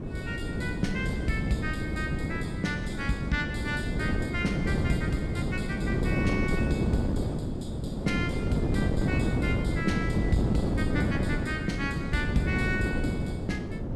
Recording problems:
hum; 50 Hz, harmonics up to 400 Hz, SNR 16 dB
wind on the microphone; below 310 Hz, SNR -3 dB

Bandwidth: 13.5 kHz